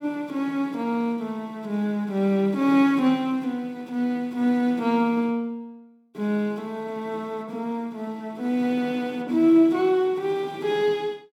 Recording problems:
none

